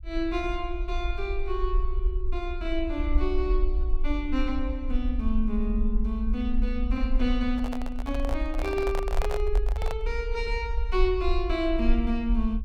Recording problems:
low-frequency rumble; below 48 Hz, SNR 1 dB
handling noise; from 7.5 to 10 s; peak +1 dB vs average level

